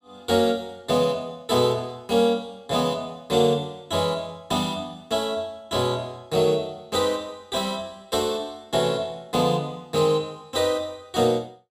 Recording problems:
none

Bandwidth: 15 kHz